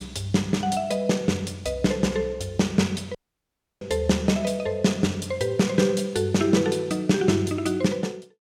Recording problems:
dropout; at 3 s for 0.5 s

